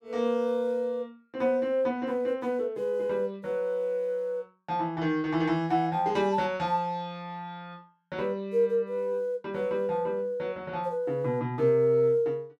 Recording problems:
none

